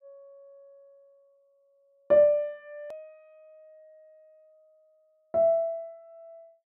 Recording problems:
hard cut with a click; at 3 s

